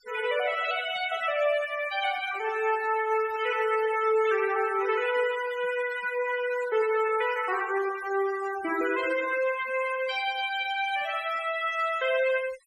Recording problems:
denoising artefacts; signal-to-artefact ratio 16 dB

